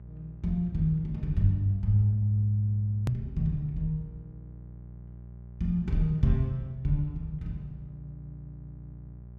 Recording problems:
electrical hum; 60 Hz, harmonics up to 600 Hz, SNR 17 dB
edit click; at 3 s

